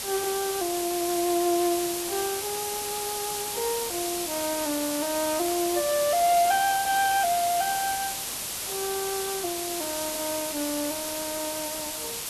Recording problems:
codec artefacts; Vorbis, log-spectral distance 14 dB, nothing above 12.7 kHz
background hiss; SNR 2 dB
static burst; at 5.5 s; peak -11 dB vs average level

